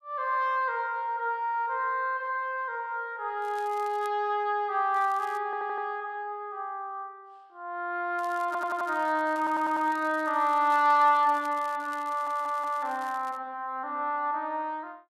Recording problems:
crackle; at 3.5 s, at 5 s and from 8 to 13 s; loose cable, SNR 25 dB
audio stuttering; 4 times, first at 5.5 s

